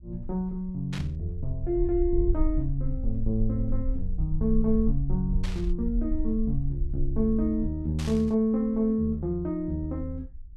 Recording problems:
low-frequency rumble; below 48 Hz, SNR 5 dB
burst of static; at 1 s, at 5.5 s and at 8 s; peak -7 dB vs average level

